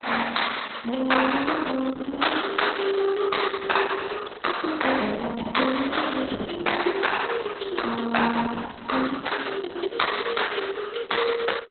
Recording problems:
codec artefacts; Opus, log-spectral distance 11 dB, nothing above 4.1 kHz

